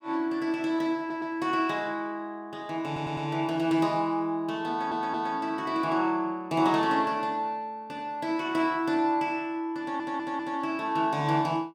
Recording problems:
stutter; 4 times, first at 1 s

